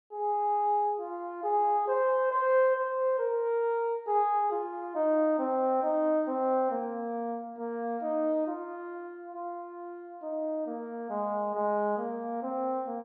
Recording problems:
none

